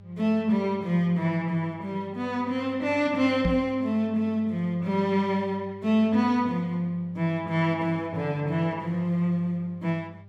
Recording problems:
hum; 50 Hz, harmonics up to 800 Hz, SNR 21 dB
microphone bump; at 3.5 s; peak +3 dB vs average level

